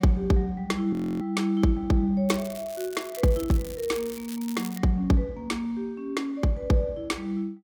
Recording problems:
audio freezing; at 1 s
crackle; from 2.5 to 5 s; loose cable, SNR 16 dB

